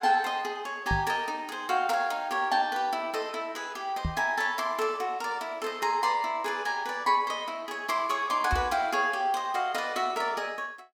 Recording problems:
microphone thump; at 1 s, at 4 s and at 8.5 s; peak +2 dB vs average level

